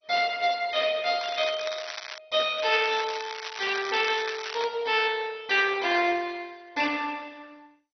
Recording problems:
lossy codec; MP2, log-spectral distance 8 dB, nothing above 4.9 kHz
crackling; at 1 s and from 2.5 to 4.5 s; loose cable, SNR 11 dB

